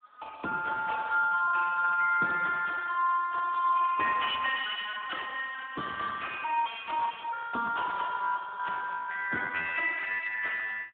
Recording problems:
phone line; 220 Hz to 3.7 kHz, Speex

